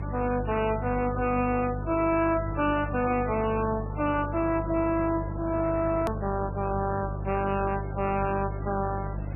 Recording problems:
lossy compression; MP3, log-spectral distance 4 dB, nothing above 2.4 kHz
distorted audio; hard clipping, signal-to-distortion ratio 10 dB
hum; 50 Hz, harmonics up to 500 Hz, SNR 7 dB
hiss; SNR 16 dB
edit click; at 6 s

